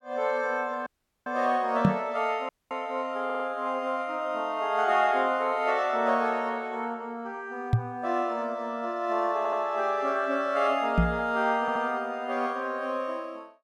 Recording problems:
audio cutting out; at 1 s and at 2.5 s
knock on the microphone; at 2 s, at 7.5 s and at 11 s; peak +9 dB vs average level
stutter; at 3.5 s, at 9.5 s and at 12 s

